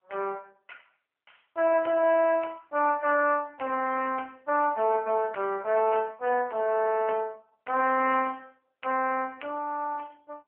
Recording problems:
telephone audio; 300 Hz to 2.7 kHz, AMR-NB

